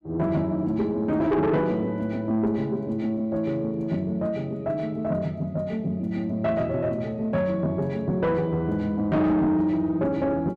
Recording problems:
distorted audio; soft clipping, signal-to-distortion ratio 10 dB

